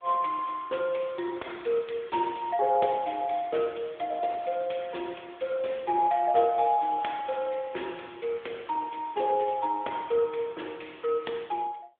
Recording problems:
telephone audio; 300 Hz to 3.6 kHz, AMR-NB

